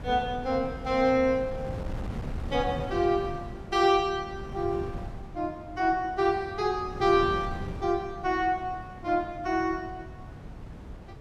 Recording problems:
wind noise; below 230 Hz, SNR 12 dB

